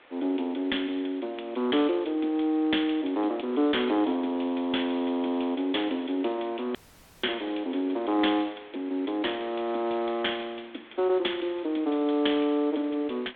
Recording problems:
telephone audio; 220 Hz to 3.6 kHz, G.726
background hiss; SNR 24 dB
audio cutting out; at 7 s

